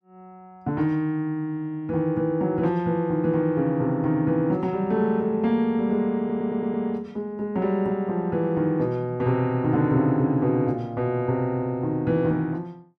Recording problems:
stutter; at 6 s

